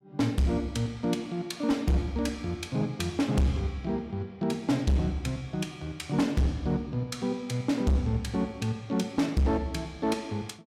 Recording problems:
distortion; hard clipping, signal-to-distortion ratio 7 dB

